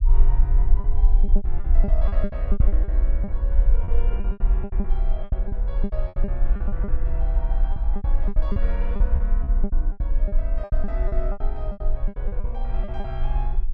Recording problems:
rumble; below 44 Hz, strongest tone 20 Hz, SNR -12 dB
lost packets; 18% of the sound replaced, filled with repeated pitch periods

